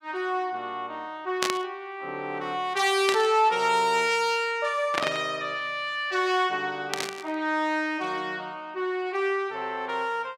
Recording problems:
static burst; 4 times, first at 1.5 s; peak +5 dB vs average level

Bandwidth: 16.5 kHz